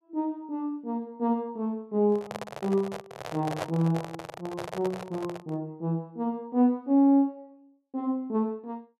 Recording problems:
microphone handling noise; from 2 to 5.5 s; peak +1 dB vs average level

